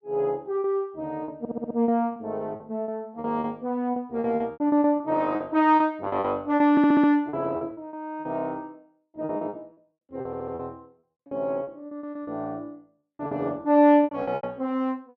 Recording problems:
packet loss; 14% of the sound replaced, filled with repeated pitch periods
audio stuttering; at 1.5 s, at 6.5 s and at 10 s

